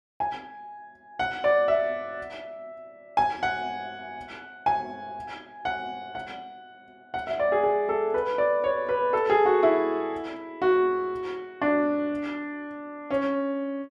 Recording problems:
none

